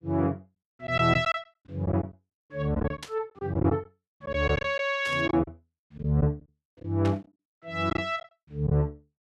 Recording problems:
lost packets; 9% of the sound replaced, filled with silence
static burst; at 3 s, at 5 s and at 7 s; peak -6 dB vs average level

